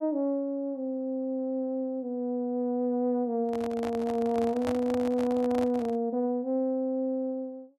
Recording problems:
microphone handling noise; from 3.5 to 6 s; peak -2 dB vs average level

